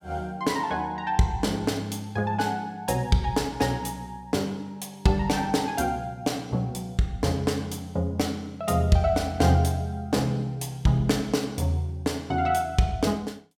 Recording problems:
none

